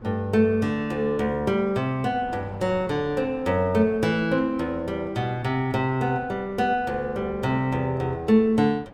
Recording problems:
wind noise; below 590 Hz, SNR 21 dB

